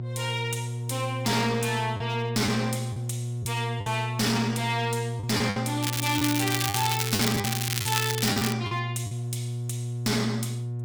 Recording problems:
distorted audio; hard clipping, uneven, signal-to-distortion ratio 6 dB
hum; 60 Hz, harmonics up to 480 Hz, SNR 4 dB
packet loss; 5% of the sound replaced, filled with the last packet
crackling; from 6 to 8.5 s; loose cable, SNR 0 dB

